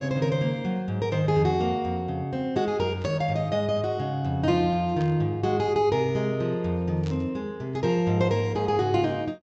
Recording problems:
treble missing; nothing above 8 kHz
static burst; at 3 s, at 5 s and at 7 s; peak -13 dB vs average level

